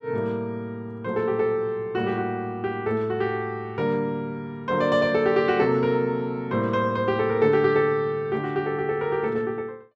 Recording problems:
none

